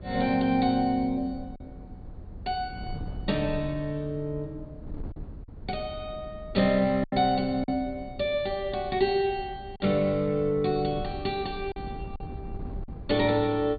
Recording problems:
treble cut off; nothing above 4.7 kHz
wind on the microphone; below 150 Hz, SNR 15 dB
packet loss; 2% of the sound replaced, filled with silence

